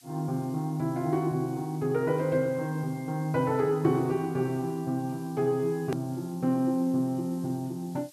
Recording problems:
hiss; slope +7 dB per octave, SNR 25 dB
click at an edit; at 6 s

